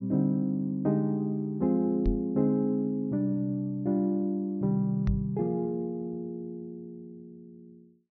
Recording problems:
treble cut off; nothing above 6 kHz
knock on the microphone; at 2 s and at 5 s; peak +2 dB vs average level

